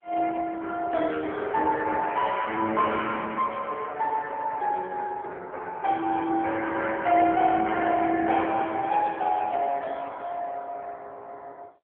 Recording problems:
telephone audio; 280 Hz to 3.3 kHz, AMR-NB

